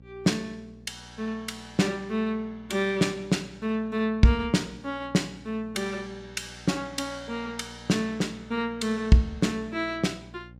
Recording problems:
hum; 60 Hz, harmonics up to 600 Hz, SNR 21 dB

